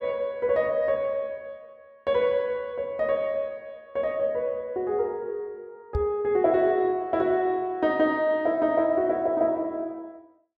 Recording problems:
microphone thump; at 6 s; peak +1 dB vs average level

